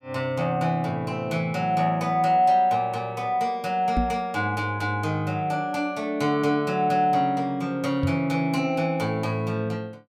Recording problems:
microphone bump; at 4 s and at 8 s; peak +3 dB vs average level

